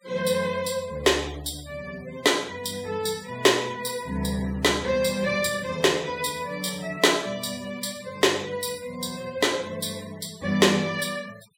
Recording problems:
noise reduction artefacts; signal-to-artefact ratio 22 dB

